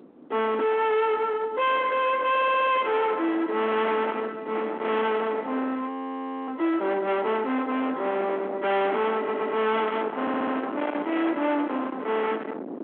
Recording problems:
telephone audio; 240 Hz to 3.6 kHz, G.726
distorted audio; soft clipping, signal-to-distortion ratio 7 dB
wind noise; below 1.2 kHz, SNR 11 dB
audio stuttering; at 2.5 s, at 9 s and at 10 s
frozen audio; at 6 s for 0.5 s

